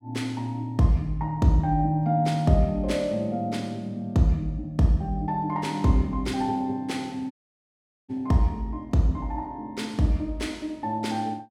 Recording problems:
audio cutting out; at 7.5 s for 1 s

